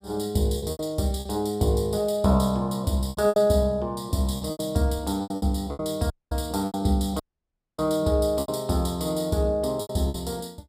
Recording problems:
lost packets; 10% of the sound replaced, filled with repeated pitch periods
audio cutting out; at 6 s and at 7 s for 0.5 s

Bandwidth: 15.5 kHz